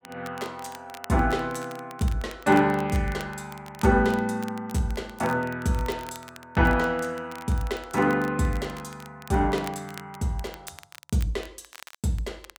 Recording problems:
crackling; vinyl, SNR 20 dB

